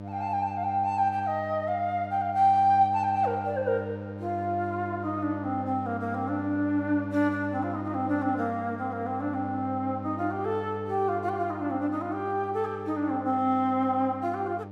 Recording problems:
hum; 50 Hz, harmonics up to 1.2 kHz, SNR 11 dB

